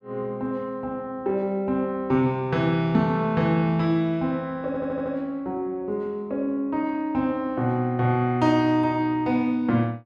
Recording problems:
stutter; at 4.5 s

